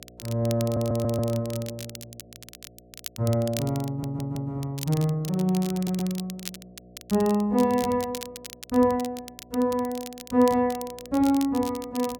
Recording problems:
hum; 60 Hz, harmonics up to 720 Hz, SNR 27 dB
crackling; vinyl, SNR 15 dB
stutter; at 0.5 s, at 4 s and at 6 s

